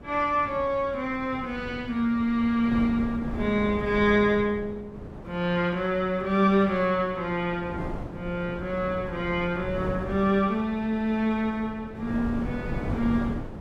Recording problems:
wind noise; below 380 Hz, SNR 11 dB

